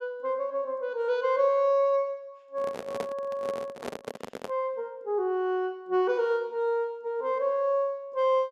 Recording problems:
handling noise; from 2.5 to 4.5 s; peak -2 dB vs average level

